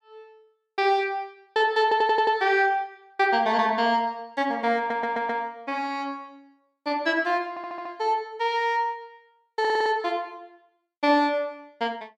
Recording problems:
audio stuttering; 4 times, first at 2 s

